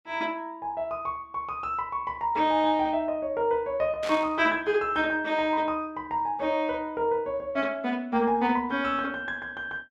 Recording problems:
burst of static; at 4 s; peak -5 dB vs average level

